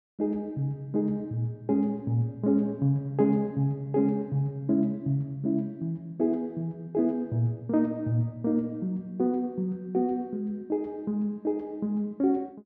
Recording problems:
none

